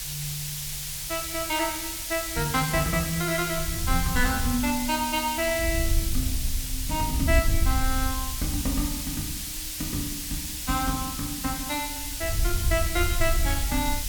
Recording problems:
hiss; SNR 2 dB
wind on the microphone; below 74 Hz, SNR 2 dB

